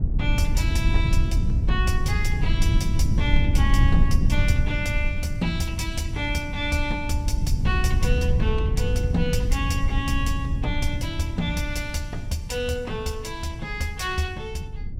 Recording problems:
rumble; below 94 Hz, SNR -3 dB

